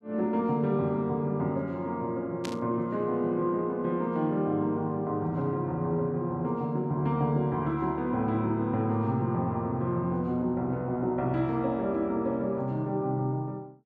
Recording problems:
burst of static; at 2.5 s; peak -5 dB vs average level

